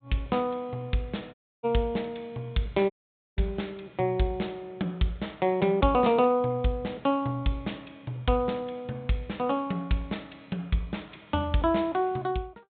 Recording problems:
low-pass filter; nothing above 4 kHz
dropout; at 1.5 s and at 3 s

